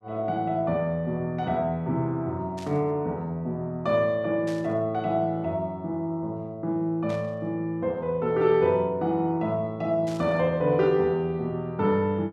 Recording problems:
static burst; 4 times, first at 2.5 s; peak -13 dB vs average level

